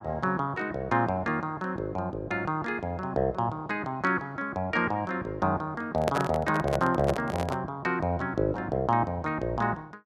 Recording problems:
microphone handling noise; from 6 to 7.5 s; peak +4 dB vs average level

